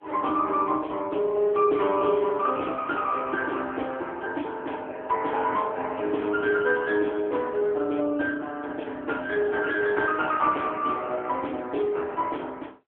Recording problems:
telephone audio; 260 Hz to 3.6 kHz, AMR-NB

